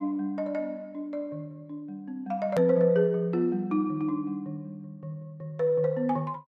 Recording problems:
edit click; at 2.5 s

